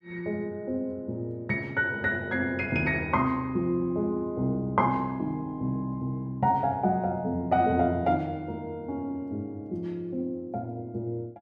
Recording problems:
none

